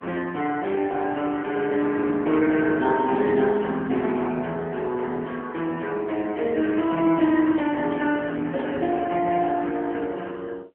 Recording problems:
telephone audio; 260 Hz to 3.3 kHz, AMR-NB

